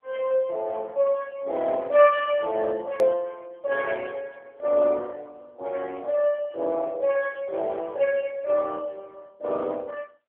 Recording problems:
telephone audio; 300 Hz to 3.3 kHz, AMR-NB
hard cut with a click; at 3 s

